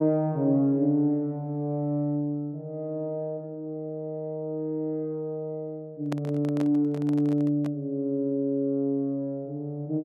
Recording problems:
microphone handling noise; from 6 to 8 s; peak -3 dB vs average level

